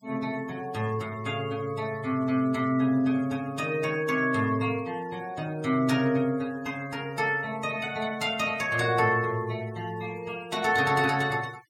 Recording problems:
denoising artefacts; signal-to-artefact ratio 22 dB

